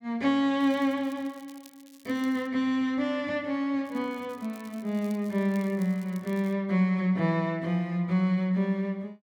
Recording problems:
crackle; from 0.5 to 2.5 s and from 4 to 6.5 s; loose cable, SNR 26 dB

